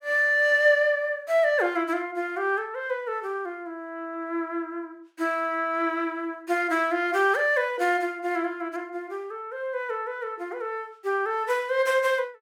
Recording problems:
none

